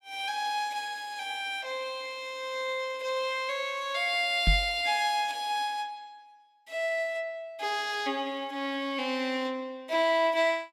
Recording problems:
microphone thump; at 4.5 s; peak +6 dB vs average level

